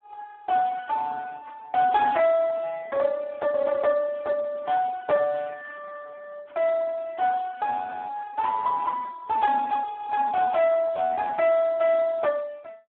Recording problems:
phone line; 260 Hz to 2.5 kHz, Speex

